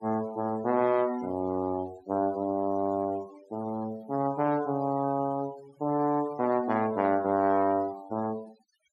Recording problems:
denoising artefacts; signal-to-artefact ratio 22 dB

